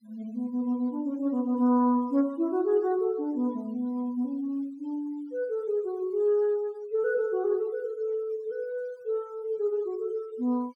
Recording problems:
denoising artefacts; signal-to-artefact ratio 28 dB

